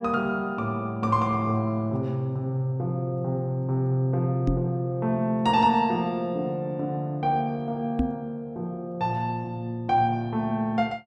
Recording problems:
microphone bump; at 4.5 s and at 8 s; peak +4 dB vs average level

